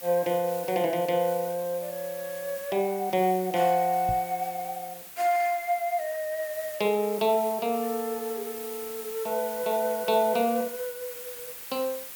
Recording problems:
hiss; slope 0 dB per octave, SNR 12 dB
knock on the microphone; at 4 s; peak -3 dB vs average level

